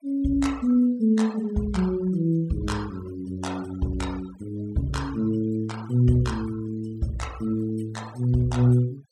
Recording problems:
noise reduction artefacts; signal-to-artefact ratio 22 dB

